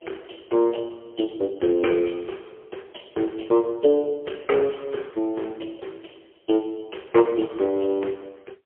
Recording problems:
telephone audio; 300 Hz to 3.7 kHz, AMR-NB, then MP3

